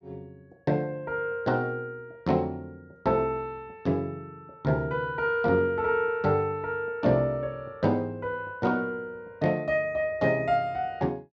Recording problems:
none

